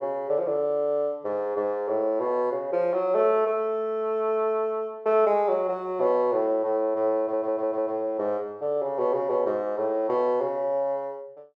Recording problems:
audio stuttering; at 7 s

